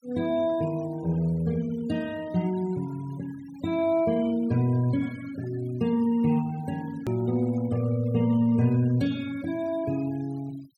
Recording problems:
denoising artefacts; signal-to-artefact ratio 22 dB
click at an edit; at 7 s

